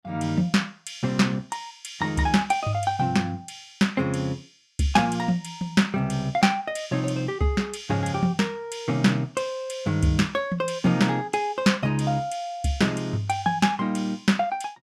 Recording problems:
none

